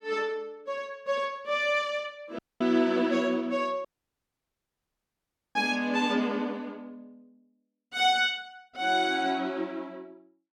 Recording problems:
audio cutting out; at 2.5 s and at 4 s for 1.5 s

